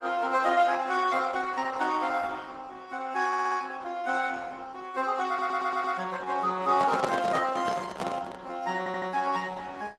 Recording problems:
lossy codec; AAC, then Opus, log-spectral distance 4 dB
stutter; at 3.5 s, at 5.5 s and at 9 s
handling noise; from 6.5 to 8.5 s; peak +4 dB vs average level

